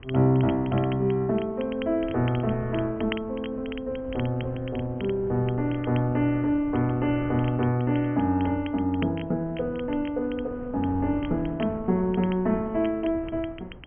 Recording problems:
treble cut off; nothing above 3.2 kHz
wind noise; below 290 Hz, SNR 17 dB
crackle; vinyl, SNR 19 dB

